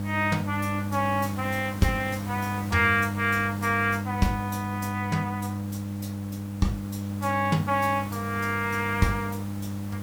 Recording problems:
hum; 50 Hz, harmonics up to 800 Hz, SNR 5 dB
background hiss; slope -5 dB per octave, SNR 16 dB

